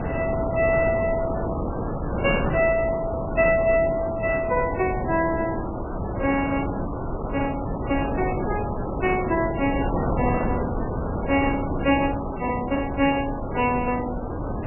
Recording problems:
lossy codec; MP3, log-spectral distance 4 dB, nothing above 2.7 kHz
wind noise; below 640 Hz, SNR 4 dB

